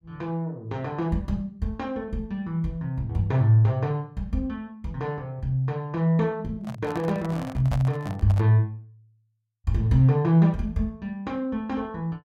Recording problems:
microphone handling noise; from 6.5 to 8.5 s; peak -5 dB vs average level

